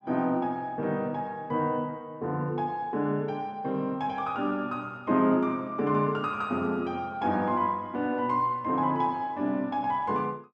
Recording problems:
none

